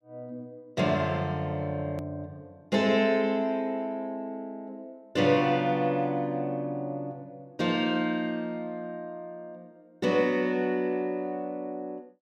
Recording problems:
hard cut with a click; at 2 s

